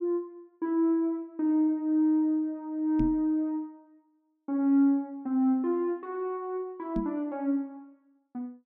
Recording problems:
knock on the microphone; at 3 s and at 7 s; peak 0 dB vs average level

